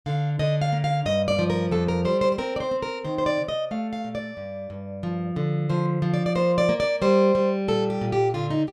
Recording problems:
none

